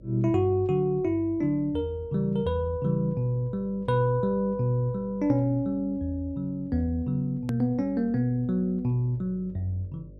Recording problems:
hum; 50 Hz, harmonics up to 600 Hz, SNR 23 dB
hard cut with a click; at 7.5 s

